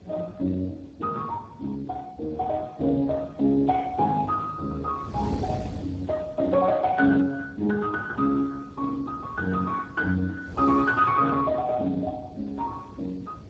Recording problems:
lossy compression; Speex, log-spectral distance 3 dB
wind on the microphone; below 350 Hz, SNR 16 dB

